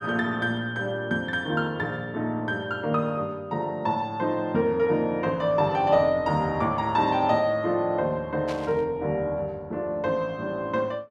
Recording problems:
static burst; at 8.5 s; peak -9 dB vs average level

